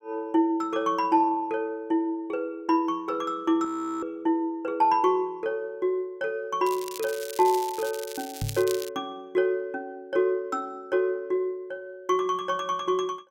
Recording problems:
audio freezing; at 3.5 s
crackle; from 6.5 to 9 s; loose cable, SNR 12 dB
microphone bump; at 8.5 s; peak 0 dB vs average level

